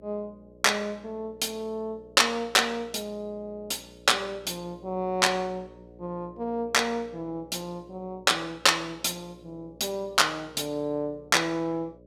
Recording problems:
electrical hum; 60 Hz, harmonics up to 600 Hz, SNR 24 dB

